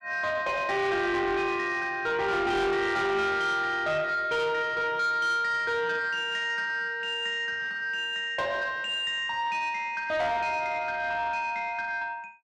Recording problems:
distortion; soft clipping, signal-to-distortion ratio 10 dB

